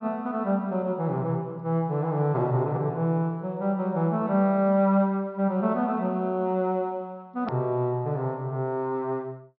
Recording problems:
treble cut off; nothing above 5.3 kHz
edit click; at 7.5 s

